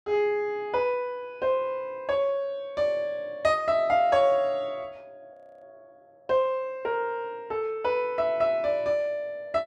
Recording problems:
frozen audio; at 5.5 s

